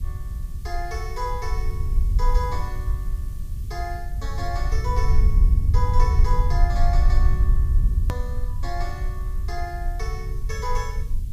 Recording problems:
hiss; slope +4 dB per octave, SNR 20 dB
rumble; below 64 Hz, SNR -8 dB
hard cut with a click; at 8 s

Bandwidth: 15 kHz